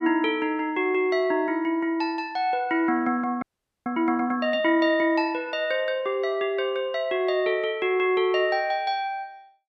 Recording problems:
frozen audio; at 3.5 s

